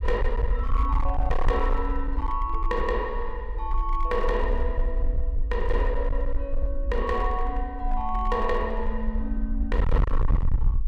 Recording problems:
distortion; hard clipping, signal-to-distortion ratio 7 dB
low-frequency rumble; below 52 Hz, SNR -1 dB

